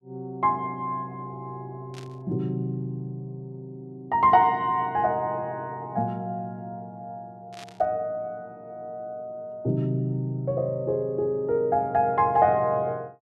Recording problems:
static burst; at 2 s and at 7.5 s; peak -13 dB vs average level

